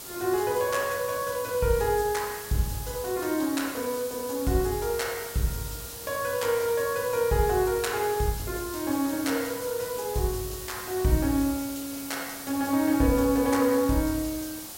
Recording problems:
background hiss; SNR 10 dB

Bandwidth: 16 kHz